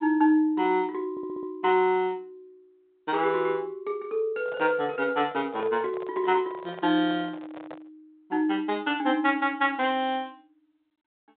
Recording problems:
telephone audio; 130 Hz to 3.8 kHz, G.726
stutter; at 1 s
microphone handling noise; from 4.5 to 8 s; peak -12 dB vs average level

